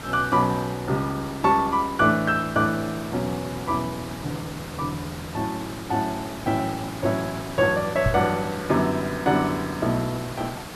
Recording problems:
hiss; slope -4 dB per octave, SNR 12 dB
microphone bump; at 8 s; peak +5 dB vs average level

